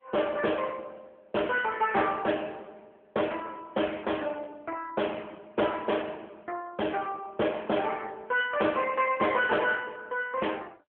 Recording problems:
phone line; 260 Hz to 3.3 kHz, AMR-NB

